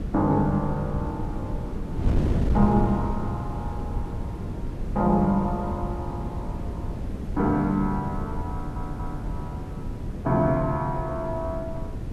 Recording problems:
hiss; slope -5 dB per octave, SNR 24 dB
wind noise; below 200 Hz, SNR 5 dB
stutter; at 8.5 s

